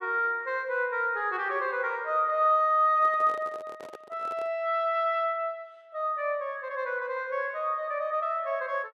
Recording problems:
microphone handling noise; from 3 to 4.5 s; peak -11 dB vs average level

